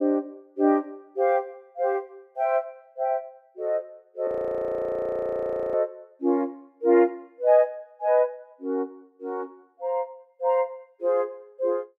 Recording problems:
frozen audio; at 4.5 s for 1.5 s

